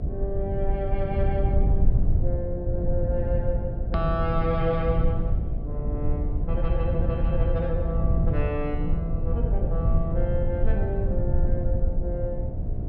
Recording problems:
treble missing; nothing above 5.5 kHz
electrical hum; 60 Hz, harmonics up to 720 Hz, SNR 10 dB
rumble; below 88 Hz, SNR -4 dB
hard cut with a click; at 4 s

